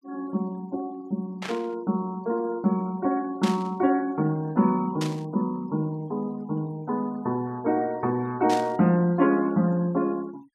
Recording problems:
noise reduction artefacts; signal-to-artefact ratio 27 dB
static burst; 4 times, first at 1.5 s; peak -4 dB vs average level

